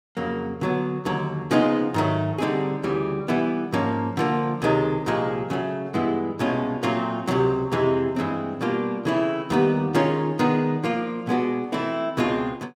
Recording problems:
none

